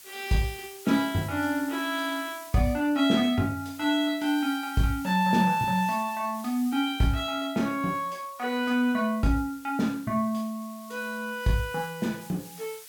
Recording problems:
background hiss; slope +3 dB per octave, SNR 19 dB

